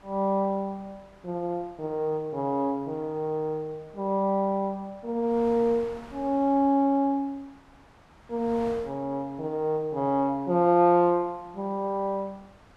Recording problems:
wind noise; below 1.5 kHz, SNR 25 dB

